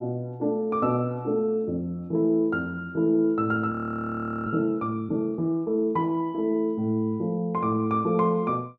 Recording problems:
frozen audio; at 3.5 s for 0.5 s

